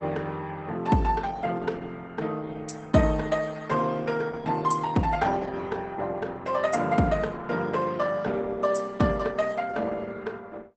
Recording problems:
codec artefacts; Opus, log-spectral distance 3 dB, nothing above 8.2 kHz

